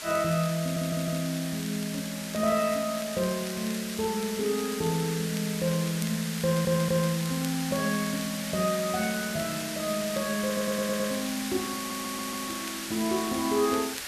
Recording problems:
hiss; SNR 6 dB
crackle; vinyl, SNR 18 dB
audio stuttering; 4 times, first at 0.5 s

